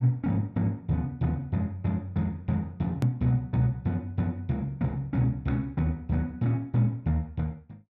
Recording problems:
edit click; at 3 s

